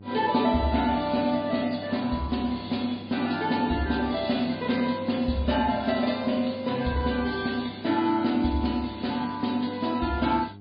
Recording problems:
codec artefacts; MP3, log-spectral distance 6 dB, nothing above 4.8 kHz
hum; 50 Hz, harmonics up to 800 Hz, SNR 19 dB

